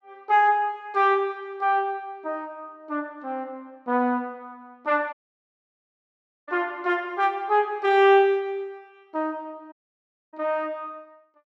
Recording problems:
dropout; at 5 s for 1.5 s and at 9.5 s for 0.5 s

